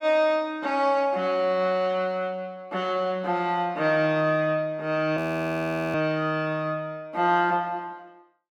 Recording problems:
frozen audio; at 5 s for 1 s

